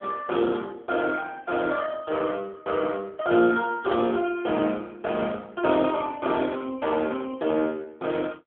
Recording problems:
telephone audio; 240 Hz to 3.3 kHz, AMR-NB

